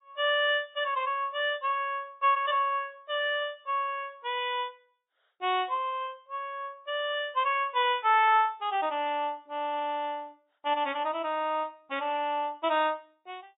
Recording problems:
treble missing; nothing above 4 kHz
lossy codec; MP3, then MP3, log-spectral distance 3 dB

